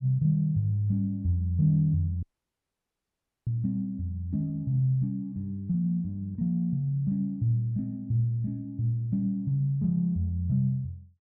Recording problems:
dropout; at 2 s for 1 s

